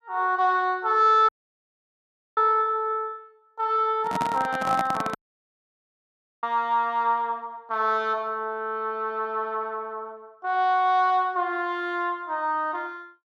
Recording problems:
dropout; at 1.5 s for 1 s and at 5 s for 1.5 s
microphone handling noise; from 4 to 5 s; peak -1 dB vs average level

